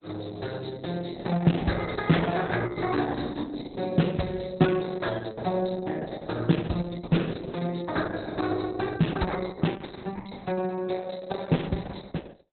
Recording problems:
lossy compression; Opus, log-spectral distance 6 dB, nothing above 4.1 kHz

